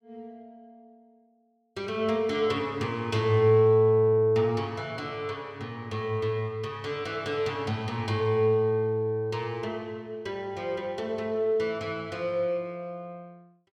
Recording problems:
none

